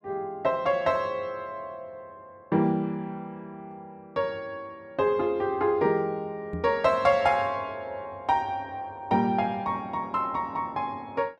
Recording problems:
knock on the microphone; at 6.5 s; peak -2 dB vs average level

